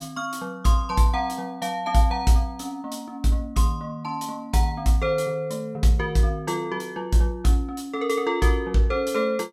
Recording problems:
none

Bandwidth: 16 kHz